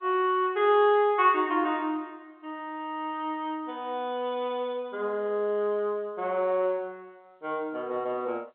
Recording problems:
telephone audio; 280 Hz to 3.7 kHz, G.711

